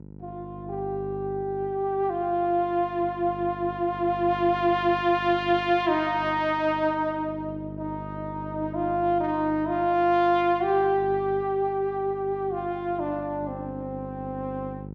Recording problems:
hum; 50 Hz, harmonics up to 600 Hz, SNR 14 dB

